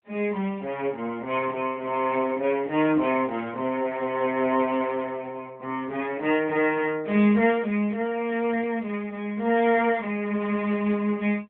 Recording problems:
phone line; 260 Hz to 3.7 kHz, AMR-NB

